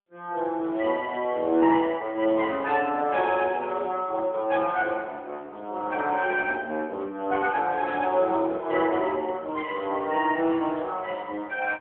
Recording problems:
phone line; 220 Hz to 2.9 kHz, AMR-NB

